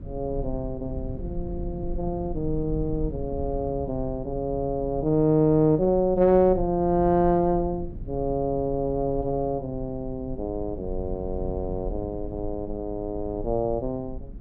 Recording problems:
low-frequency rumble; below 94 Hz, SNR 12 dB

